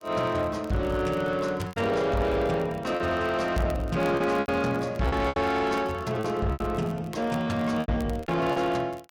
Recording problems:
distortion; soft clipping, signal-to-distortion ratio 11 dB
crackling; vinyl, SNR 25 dB
lost packets; 8% of the sound replaced, filled with repeated pitch periods

